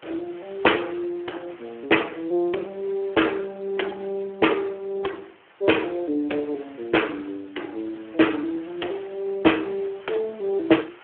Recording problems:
telephone audio; 260 Hz to 3.3 kHz, Speex
background hiss; SNR 24 dB

